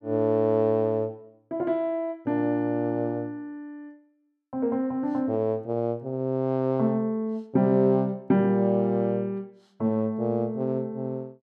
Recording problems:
none

